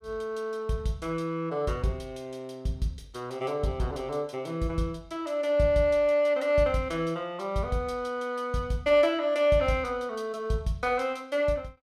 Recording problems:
none

